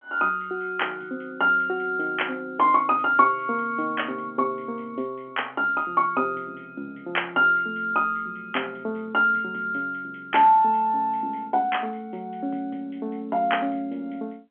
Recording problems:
phone line; 220 Hz to 3.3 kHz, G.711

